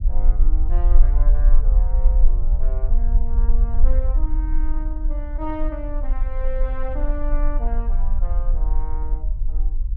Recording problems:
rumble; below 40 Hz, strongest tone 20 Hz, SNR -12 dB

